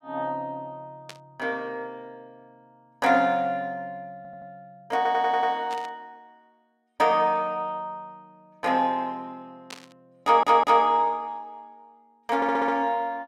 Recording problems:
static burst; at 1 s, at 5.5 s and at 9.5 s; peak -10 dB vs average level
audio stuttering; 4 times, first at 4 s

